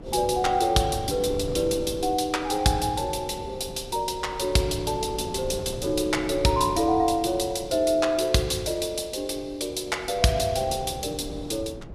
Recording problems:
wind noise; below 370 Hz, SNR 14 dB

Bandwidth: 14.5 kHz